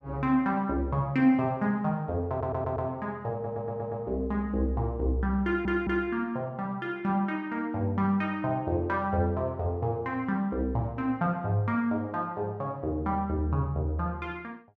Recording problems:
stutter; at 2.5 s, at 3.5 s and at 5.5 s

